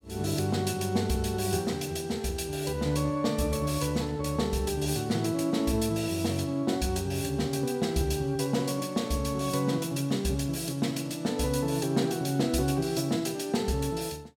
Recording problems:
none

